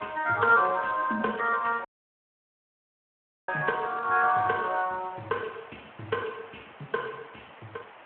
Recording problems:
telephone audio; 260 Hz to 3 kHz, Speex
background hiss; SNR 22 dB
audio cutting out; at 2 s for 1.5 s

